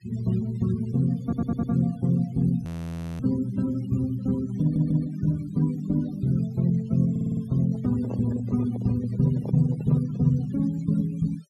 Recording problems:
noise reduction artefacts; signal-to-artefact ratio 21 dB
stutter; at 1 s, at 4.5 s and at 7 s
audio freezing; at 2.5 s for 0.5 s
microphone handling noise; from 7.5 to 11 s; peak -7 dB vs average level

